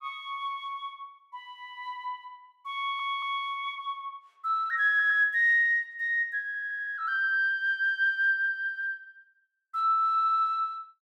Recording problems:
audio stuttering; 4 times, first at 3 s

